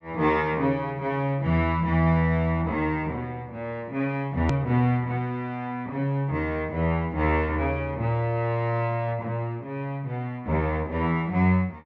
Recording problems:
treble cut off; nothing above 8 kHz
edit click; at 4.5 s

